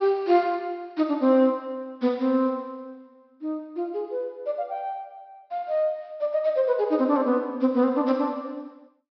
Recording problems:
low-pass filter; nothing above 5.5 kHz

